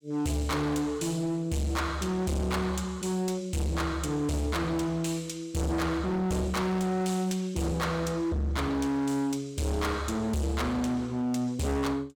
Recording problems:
distorted audio; hard clipping, signal-to-distortion ratio 6 dB

